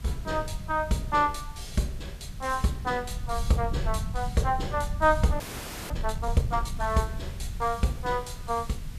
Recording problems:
background hiss; slope -2 dB per octave, SNR 22 dB
low-frequency rumble; below 98 Hz, SNR 8 dB
audio freezing; at 5.5 s for 0.5 s

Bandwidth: 14.5 kHz